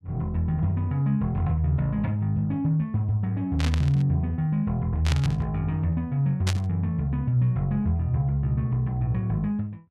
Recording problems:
static burst; at 3.5 s, at 5 s and at 6.5 s; peak -1 dB vs average level

